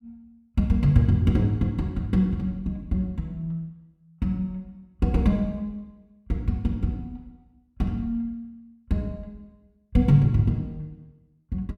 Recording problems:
none

